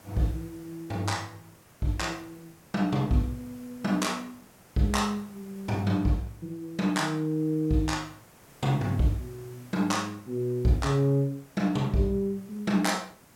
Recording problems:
background hiss; slope -4 dB per octave, SNR 25 dB

